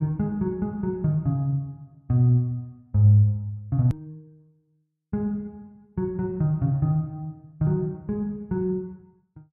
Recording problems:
hard cut with a click; at 4 s

